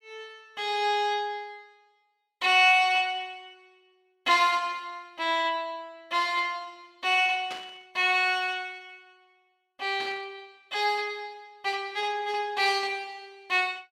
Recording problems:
static burst; at 7.5 s and at 10 s; peak -9 dB vs average level

